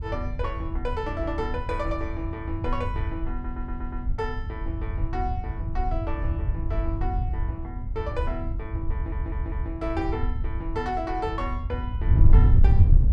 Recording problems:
wind on the microphone; below 90 Hz, SNR -5 dB
audio stuttering; at 3.5 s and at 9 s

